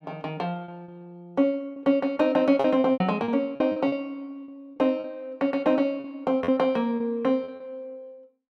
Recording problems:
packet loss; 9% of the sound replaced, filled with repeated pitch periods

